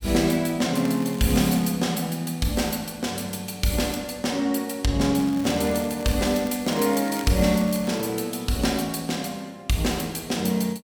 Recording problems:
crackling; at 0.5 s and from 5 to 8 s; loose cable, SNR 18 dB

